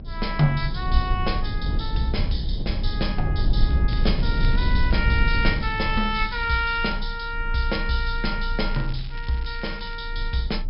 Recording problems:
treble missing; nothing above 5.3 kHz
rumble; below 70 Hz, strongest tone 28 Hz, SNR 1 dB
crackling; from 4 to 6.5 s and from 8.5 to 10 s; loose cable, SNR 18 dB

